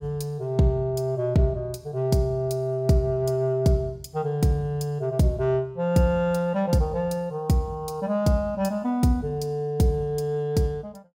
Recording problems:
none

